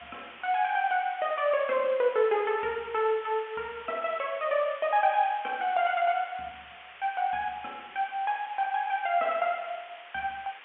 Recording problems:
telephone audio; 280 Hz to 3.3 kHz, G.711
background hiss; SNR 18 dB

